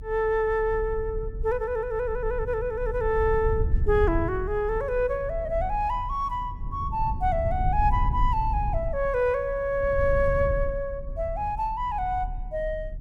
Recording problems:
rumble; below 82 Hz, SNR 6 dB

